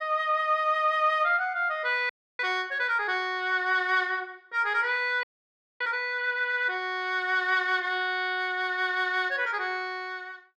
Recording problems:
frozen audio; at 2 s and at 5 s for 0.5 s

